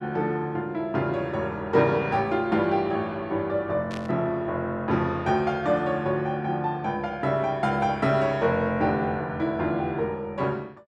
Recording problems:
burst of static; at 4 s; peak -10 dB vs average level

